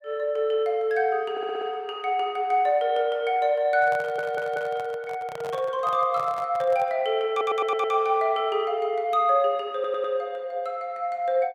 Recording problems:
stutter; 4 times, first at 1.5 s
handling noise; from 3.5 to 7 s; peak -8 dB vs average level

